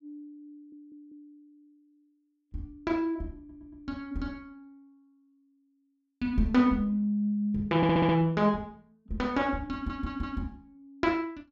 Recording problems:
audio stuttering; 4 times, first at 0.5 s

